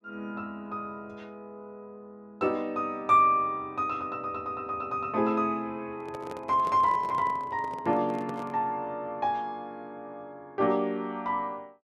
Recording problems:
microphone handling noise; from 6 to 8.5 s; peak -7 dB vs average level

